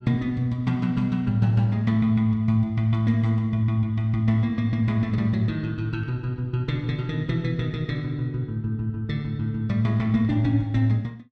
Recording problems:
none

